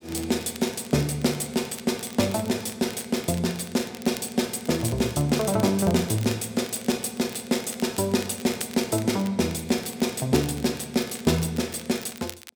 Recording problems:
crackling; vinyl, SNR 17 dB

